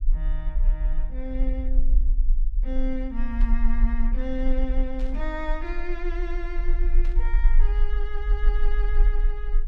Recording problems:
rumble; below 38 Hz, strongest tone 22 Hz, SNR -8 dB
static burst; at 3.5 s, at 5 s and at 7 s; peak -10 dB vs average level

